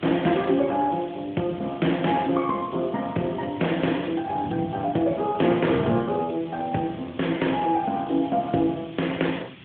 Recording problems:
telephone audio; 130 Hz to 3.6 kHz, AMR-NB
hiss; SNR 22 dB
wind noise; below 270 Hz, SNR 15 dB

